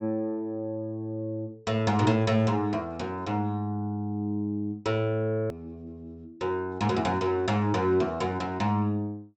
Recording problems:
treble cut off; nothing above 8 kHz
edit click; at 5.5 s

